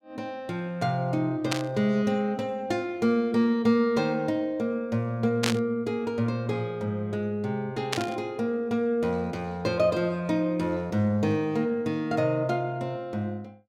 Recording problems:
burst of static; at 1.5 s, at 5.5 s and at 8 s; peak +4 dB vs average level

